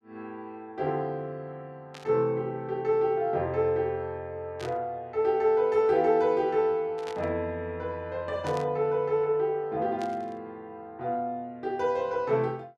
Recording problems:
static burst; 5 times, first at 2 s; peak -10 dB vs average level

